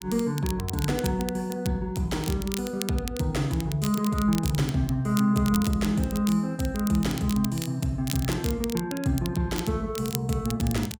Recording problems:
crackle; vinyl, SNR 12 dB

